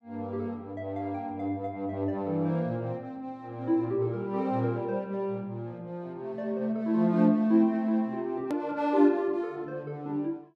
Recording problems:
hard cut with a click; at 8.5 s

